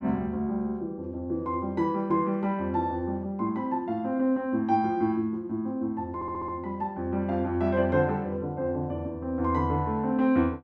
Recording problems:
stutter; at 6 s

